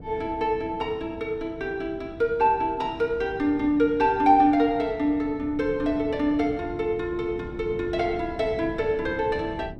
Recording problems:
wind on the microphone; below 290 Hz, SNR 16 dB

